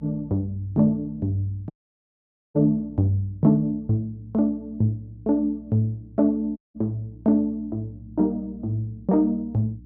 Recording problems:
hum; 60 Hz, harmonics up to 300 Hz, SNR 23 dB
audio cutting out; at 1.5 s for 1 s and at 6.5 s

